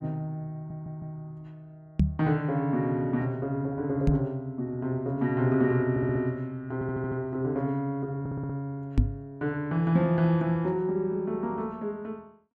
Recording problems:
stutter; 4 times, first at 0.5 s
microphone thump; at 2 s, at 4 s and at 9 s; peak +9 dB vs average level

